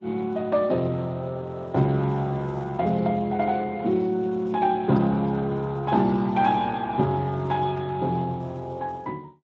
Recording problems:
codec artefacts; Vorbis, then Speex, log-spectral distance 2 dB

